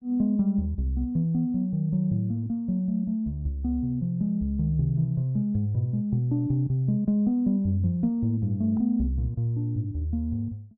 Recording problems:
none

